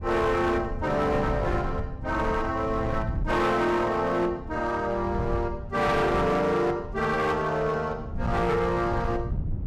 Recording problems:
distortion; hard clipping, signal-to-distortion ratio 12 dB
wind on the microphone; below 140 Hz, SNR 9 dB

